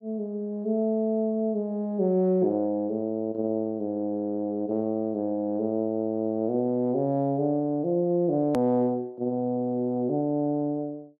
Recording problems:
hard cut with a click; at 8.5 s

